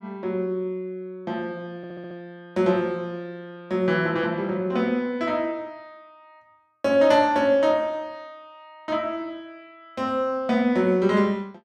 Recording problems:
audio stuttering; at 2 s

